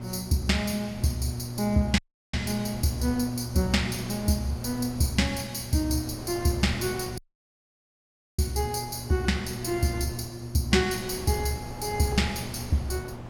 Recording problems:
electrical hum; 60 Hz, harmonics up to 720 Hz, SNR 11 dB
wind noise; below 700 Hz, SNR 15 dB
audio cutting out; at 2 s and at 7 s for 1 s

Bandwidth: 17.5 kHz